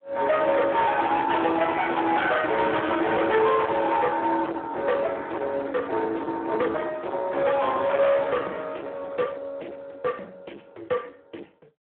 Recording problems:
phone line; 280 Hz to 3.6 kHz, Speex
distorted audio; soft clipping, signal-to-distortion ratio 7 dB

